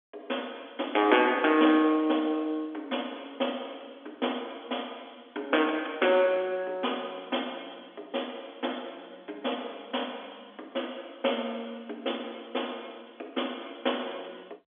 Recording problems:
telephone audio; 260 Hz to 3.5 kHz, G.711

